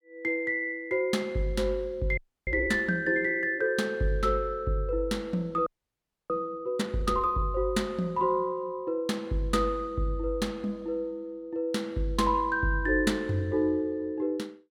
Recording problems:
frozen audio; at 2 s and at 5.5 s for 0.5 s

